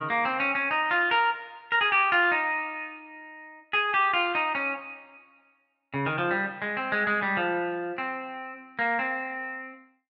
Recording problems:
none

